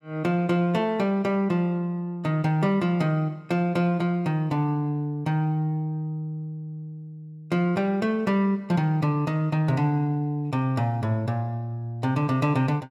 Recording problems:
none

